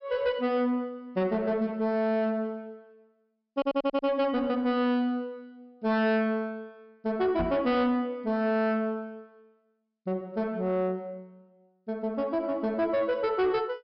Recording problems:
low-pass filter; nothing above 5.4 kHz
distorted audio; soft clipping, signal-to-distortion ratio 11 dB
stutter; at 3.5 s
knock on the microphone; at 7.5 s; peak 0 dB vs average level

